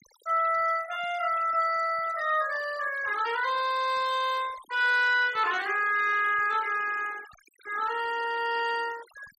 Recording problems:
noise reduction artefacts; signal-to-artefact ratio 19 dB

